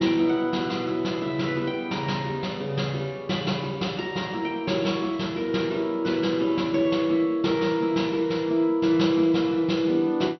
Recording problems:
low-pass filter; nothing above 5.9 kHz

